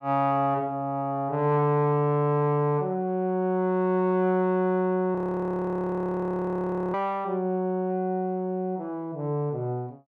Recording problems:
frozen audio; at 5 s for 2 s

